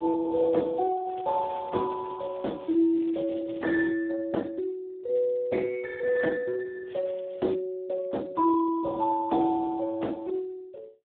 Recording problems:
phone line; 240 Hz to 2.2 kHz, Speex
crackle; from 1 to 4 s and at 7 s; loose cable, SNR 27 dB

